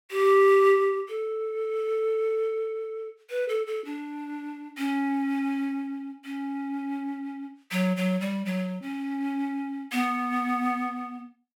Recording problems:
none

